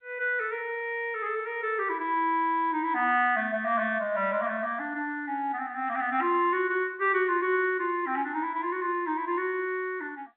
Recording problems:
phone line; 260 Hz to 3.5 kHz, G.711

